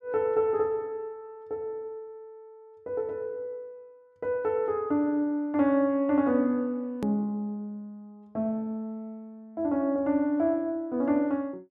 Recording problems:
click at an edit; at 7 s

